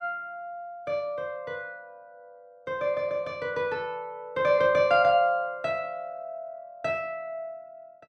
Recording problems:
none

